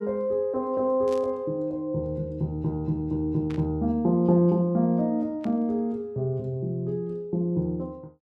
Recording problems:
static burst; at 1 s, at 3.5 s and at 5.5 s; peak -14 dB vs average level

